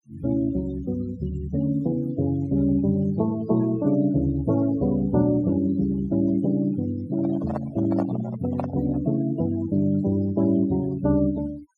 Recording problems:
denoising artefacts; signal-to-artefact ratio 21 dB
microphone handling noise; from 7 to 9 s; peak -2 dB vs average level

